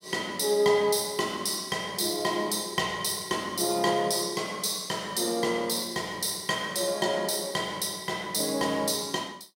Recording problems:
none

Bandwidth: 16 kHz